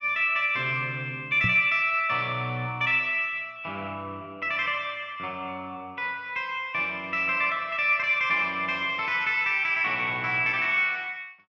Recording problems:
knock on the microphone; at 1.5 s; peak -1 dB vs average level

